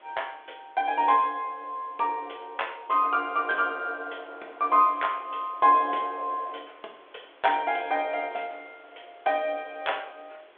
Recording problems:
phone line; 320 Hz to 3.5 kHz, G.726
hiss; SNR 29 dB

